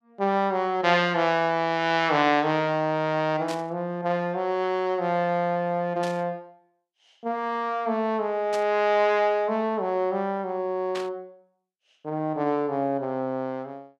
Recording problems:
static burst; 4 times, first at 3.5 s; peak -7 dB vs average level

